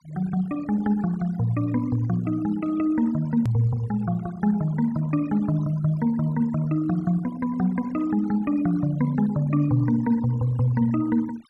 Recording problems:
noise reduction artefacts; signal-to-artefact ratio 24 dB
click at an edit; at 3.5 s

